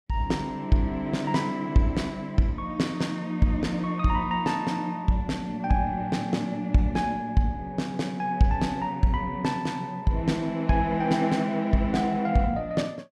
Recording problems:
none

